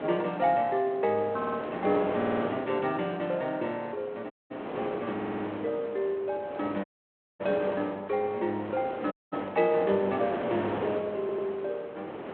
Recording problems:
telephone audio; 240 Hz to 3.6 kHz, G.726
wind noise; below 900 Hz, SNR 8 dB
stutter; 4 times, first at 1.5 s
audio cutting out; at 4.5 s, at 7 s for 0.5 s and at 9 s

